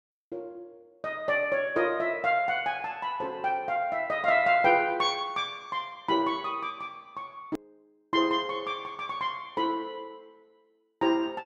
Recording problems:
edit click; at 7.5 s

